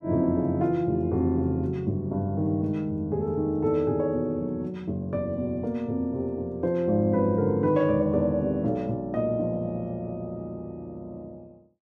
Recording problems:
none

